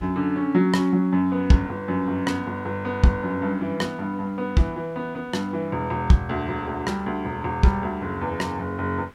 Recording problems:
background hiss; SNR 27 dB

